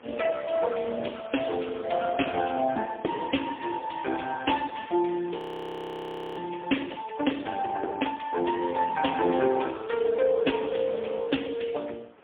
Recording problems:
phone line; 300 Hz to 3.4 kHz, AMR-NB, then MP3
wind noise; below 1.6 kHz, SNR 23 dB
frozen audio; at 5.5 s for 1 s

